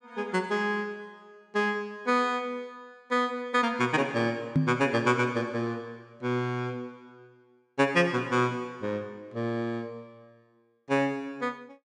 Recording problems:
microphone thump; at 4.5 s; peak +7 dB vs average level

